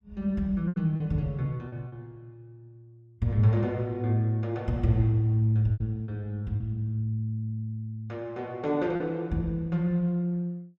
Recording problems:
lost packets; 4% of the sound replaced, filled with repeated pitch periods

